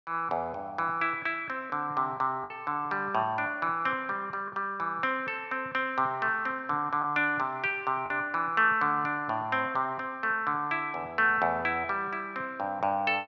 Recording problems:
lost packets; 1.4% of the sound replaced, filled with the last packet

